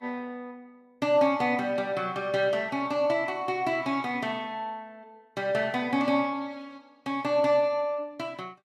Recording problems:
codec artefacts; Vorbis, log-spectral distance 2 dB, nothing above 13.5 kHz

